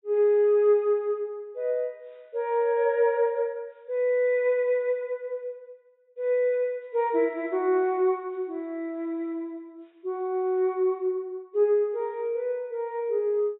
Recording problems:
treble cut off; nothing above 3.8 kHz

